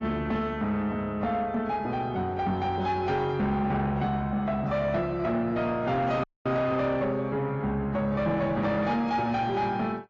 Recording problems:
lossy compression; AAC, log-spectral distance 2 dB, nothing above 7.3 kHz
distortion; soft clipping, signal-to-distortion ratio 11 dB
audio cutting out; at 6 s

